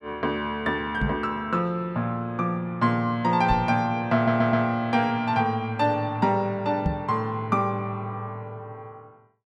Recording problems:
microphone bump; at 1 s, at 3.5 s and at 7 s; peak +4 dB vs average level
stutter; at 4 s

